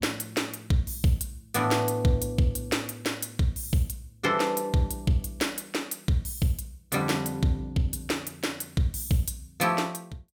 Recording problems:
none

